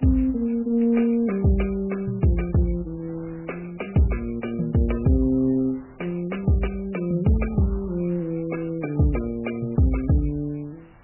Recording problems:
lossy codec; MP3, log-spectral distance 4 dB, nothing above 2.4 kHz
wind on the microphone; below 1.1 kHz, SNR 25 dB

